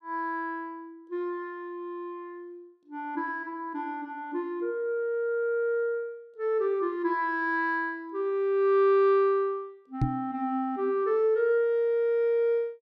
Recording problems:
microphone bump; at 10 s; peak +5 dB vs average level

